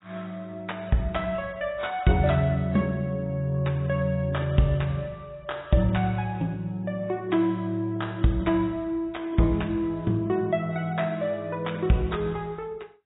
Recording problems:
codec artefacts; AAC, log-spectral distance 2 dB, nothing above 3.8 kHz

